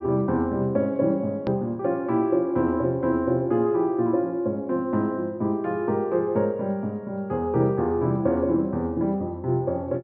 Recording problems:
low-pass filter; nothing above 5.5 kHz
click at an edit; at 1.5 s

